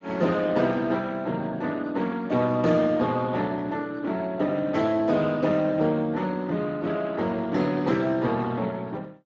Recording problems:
lossy codec; Speex, log-spectral distance 3 dB, nothing above 7.3 kHz

